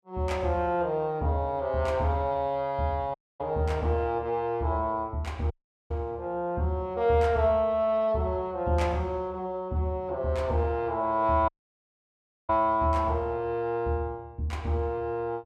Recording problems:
audio cutting out; at 3 s, at 5.5 s and at 11 s for 1 s

